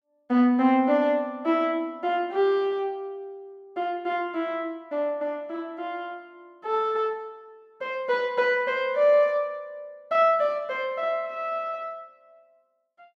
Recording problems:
none

